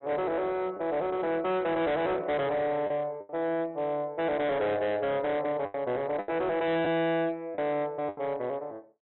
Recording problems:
treble missing; nothing above 4 kHz
distorted audio; hard clipping, signal-to-distortion ratio 8 dB
packet loss; 5% of the sound replaced, filled with the last packet

